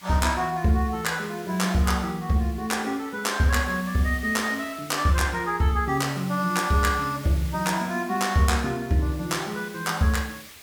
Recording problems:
background hiss; SNR 19 dB

